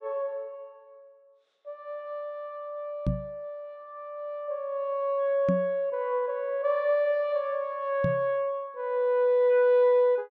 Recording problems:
microphone thump; at 3 s, at 5.5 s and at 8 s; peak +3 dB vs average level

